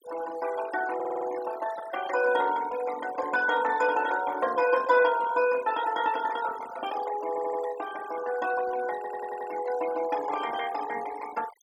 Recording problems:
noise reduction artefacts; signal-to-artefact ratio 14 dB
audio stuttering; at 1 s, at 7.5 s and at 9 s

